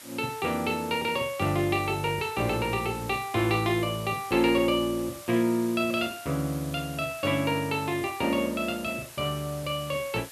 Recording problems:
background hiss; slope 0 dB per octave, SNR 16 dB

